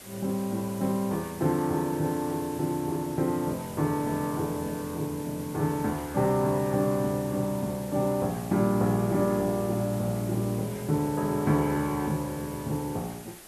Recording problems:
hiss; slope -3 dB per octave, SNR 16 dB

